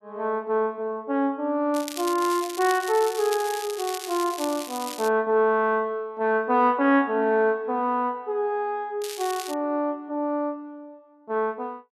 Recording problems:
crackle; from 1.5 to 5 s and at 9 s; loose cable, SNR 11 dB

